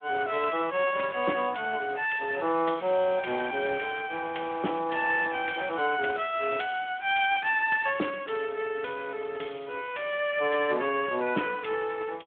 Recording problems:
phone line; 190 Hz to 3.4 kHz, Speex

